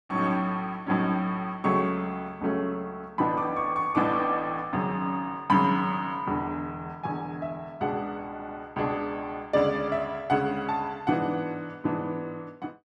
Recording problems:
stutter; at 8.5 s

